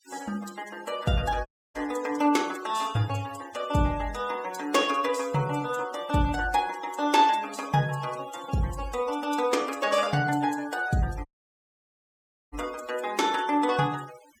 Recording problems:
denoising artefacts; signal-to-artefact ratio 18 dB
dropout; at 1.5 s and at 11 s for 1.5 s

